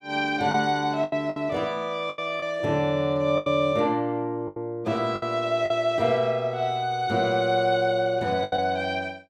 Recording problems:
lost packets; 7% of the sound replaced, filled with the last packet

